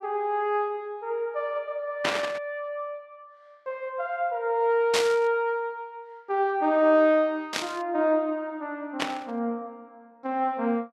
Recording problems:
static burst; 4 times, first at 2 s; peak +4 dB vs average level

